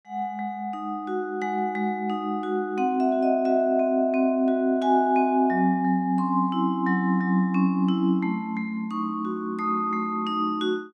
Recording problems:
none

